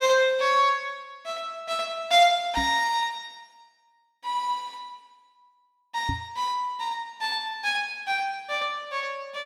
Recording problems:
knock on the microphone; at 2.5 s and at 6 s; peak -1 dB vs average level

